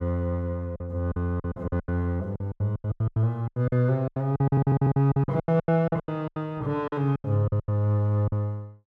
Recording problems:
lost packets; 20% of the sound replaced, filled with silence
stutter; at 4.5 s

